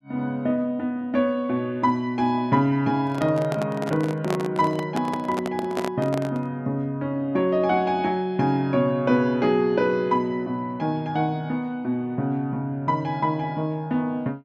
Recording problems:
handling noise; from 3 to 6.5 s; peak -1 dB vs average level

